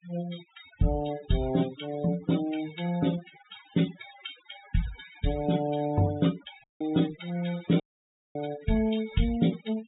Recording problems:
low-pass filter; nothing above 4 kHz
noise reduction artefacts; signal-to-artefact ratio 14 dB
dropout; at 6.5 s and at 8 s for 0.5 s

